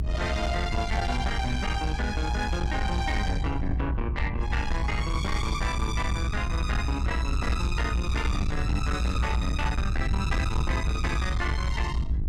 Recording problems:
distorted audio; soft clipping, signal-to-distortion ratio 10 dB
hum; 50 Hz, harmonics up to 850 Hz, SNR 13 dB
rumble; below 94 Hz, SNR 0 dB

